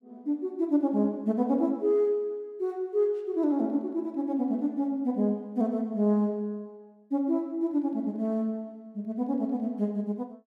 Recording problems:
none

